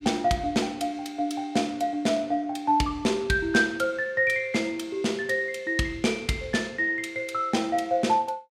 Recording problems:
none

